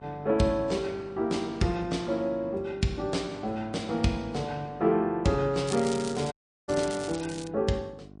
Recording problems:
lossy compression; MP3, log-spectral distance 3 dB, nothing above 8.7 kHz
hum; 50 Hz, harmonics up to 1.1 kHz, SNR 20 dB
crackling; from 5.5 to 7.5 s; loose cable, SNR 13 dB
dropout; at 6.5 s

